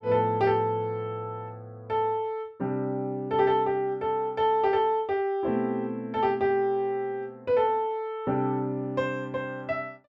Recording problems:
none

